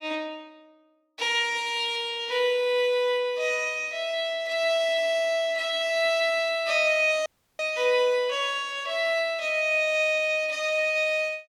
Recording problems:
audio cutting out; at 7.5 s

